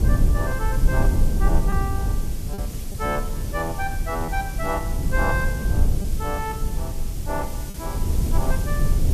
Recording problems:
hiss; slope +2 dB per octave, SNR 9 dB
rumble; below 84 Hz, SNR -4 dB
lost packets; 1.7% of the sound replaced, filled with repeated pitch periods

